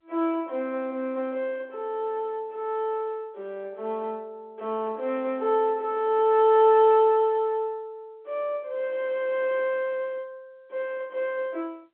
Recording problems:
phone line; 240 Hz to 3.5 kHz, G.711

